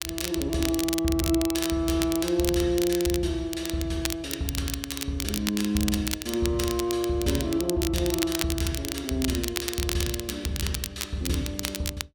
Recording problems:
crackling; vinyl, SNR 5 dB

